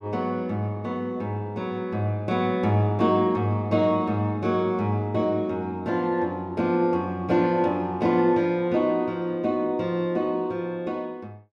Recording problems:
none

